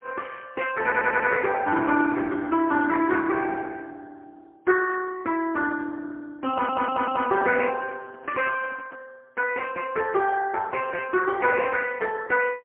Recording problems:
phone line; 240 Hz to 3.1 kHz, AMR-NB, then MP3
stutter; at 1 s and at 6.5 s
handling noise; from 7.5 to 9 s; peak -12 dB vs average level

